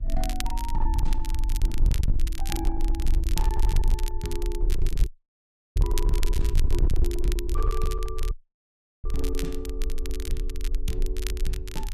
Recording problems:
distortion; hard clipping, uneven, signal-to-distortion ratio 5 dB
electrical hum; 60 Hz, harmonics up to 2.1 kHz, SNR 27 dB
rumble; below 48 Hz, strongest tone 20 Hz, SNR -7 dB
crackling; vinyl, SNR 5 dB
dropout; at 5 s for 0.5 s and at 8.5 s for 0.5 s

